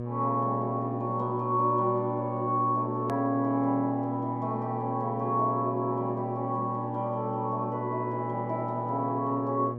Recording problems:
hum; 60 Hz, harmonics up to 1.1 kHz, SNR 6 dB
edit click; at 3 s

